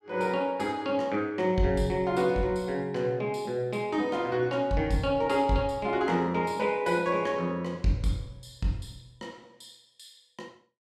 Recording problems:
none

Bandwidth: 14 kHz